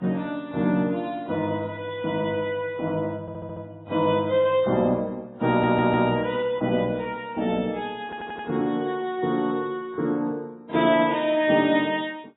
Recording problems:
lossy codec; MP3, then AAC, log-spectral distance 2 dB, nothing above 3.8 kHz
stutter; at 3 s, at 5.5 s and at 8 s

